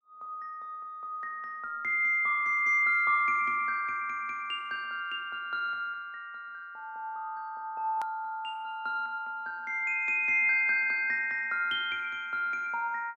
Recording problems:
hard cut with a click; at 8 s

